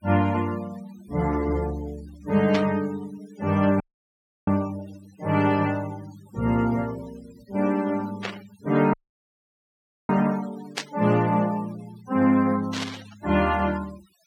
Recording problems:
noise reduction artefacts; signal-to-artefact ratio 22 dB
burst of static; 4 times, first at 2.5 s; peak 0 dB vs average level
audio cutting out; at 4 s for 0.5 s and at 9 s for 1 s

